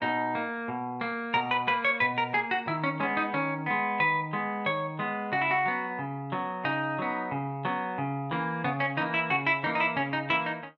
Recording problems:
none

